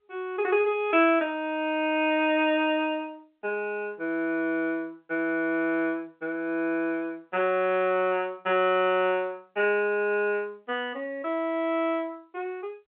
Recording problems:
telephone audio; 260 Hz to 3.3 kHz, G.711

